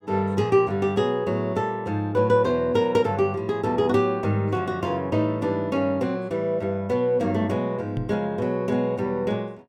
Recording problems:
knock on the microphone; at 8 s; peak -2 dB vs average level

